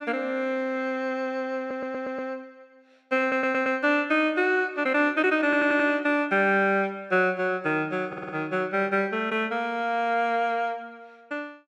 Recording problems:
audio stuttering; 4 times, first at 1.5 s

